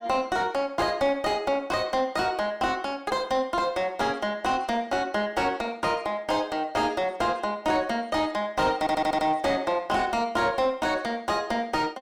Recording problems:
distortion; soft clipping, signal-to-distortion ratio 9 dB
audio stuttering; at 9 s

